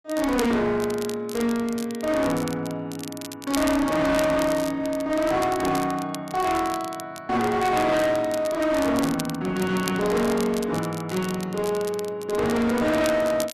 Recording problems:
distortion; hard clipping, uneven, signal-to-distortion ratio 7 dB
crackle; vinyl, SNR 14 dB

